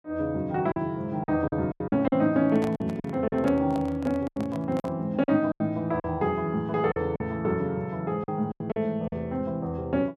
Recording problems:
packet loss; 10% of the sound replaced, filled with silence
microphone handling noise; from 2.5 to 5 s; peak -4 dB vs average level

